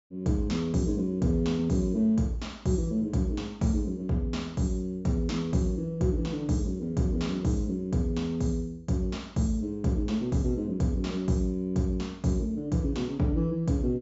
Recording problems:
treble missing; nothing above 8 kHz

